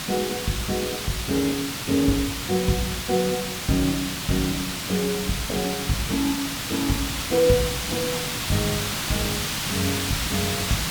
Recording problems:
hiss; slope 0 dB per octave, SNR 1 dB

